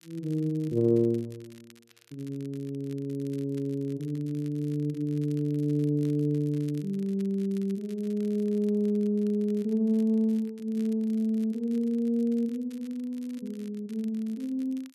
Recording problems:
crackling; vinyl, SNR 28 dB

